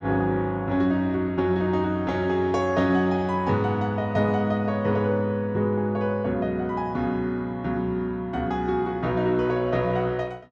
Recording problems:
none

